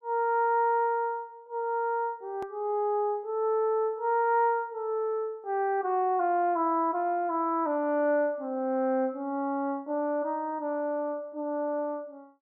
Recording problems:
edit click; at 2.5 s

